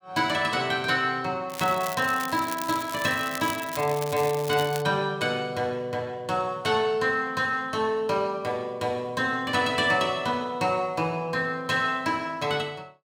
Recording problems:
crackling; from 1.5 to 5 s; loose cable, SNR 12 dB

